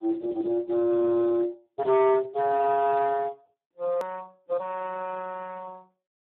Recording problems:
telephone audio; 220 Hz to 2.1 kHz, Speex
distorted audio; hard clipping, signal-to-distortion ratio 11 dB
hard cut with a click; at 4 s

